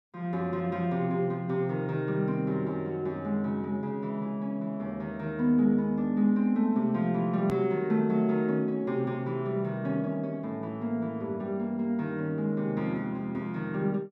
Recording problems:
edit click; at 7.5 s

